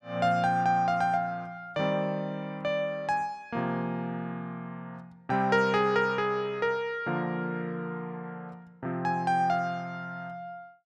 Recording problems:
none

